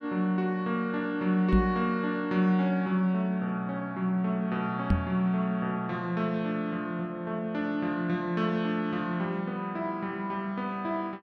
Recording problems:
knock on the microphone; at 1.5 s and at 5 s; peak +7 dB vs average level

